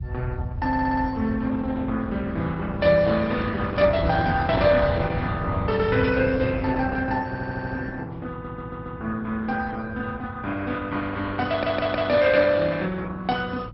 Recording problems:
treble cut off; nothing above 5.4 kHz
lossy compression; Opus, log-spectral distance 3 dB
low-frequency rumble; below 120 Hz, SNR 7 dB
audio stuttering; 4 times, first at 0.5 s
microphone handling noise; from 3.5 to 5 s; peak -6 dB vs average level

